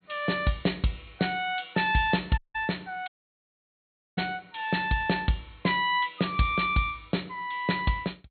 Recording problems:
treble cut off; nothing above 4.3 kHz
dropout; at 2.5 s and at 3 s for 1 s

